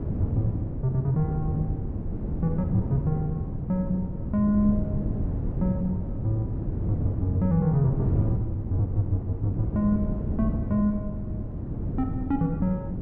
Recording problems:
wind on the microphone; below 200 Hz, SNR 3 dB

